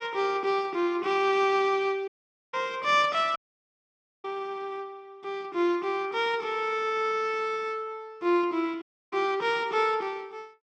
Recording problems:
audio cutting out; at 2 s, at 3.5 s for 1 s and at 9 s

